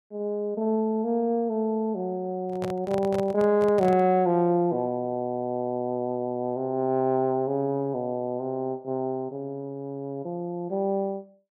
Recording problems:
handling noise; from 2.5 to 4 s; peak -4 dB vs average level

